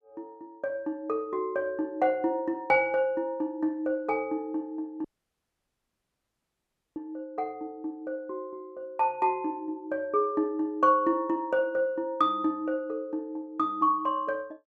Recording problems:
dropout; at 5 s for 2 s

